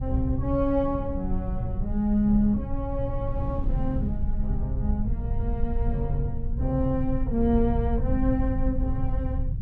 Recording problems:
rumble; below 72 Hz, SNR 3 dB
wind on the microphone; below 200 Hz, SNR 17 dB

